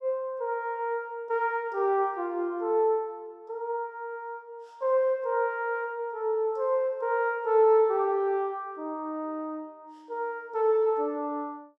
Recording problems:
none

